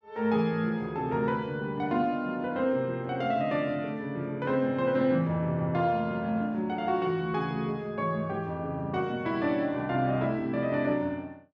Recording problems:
none

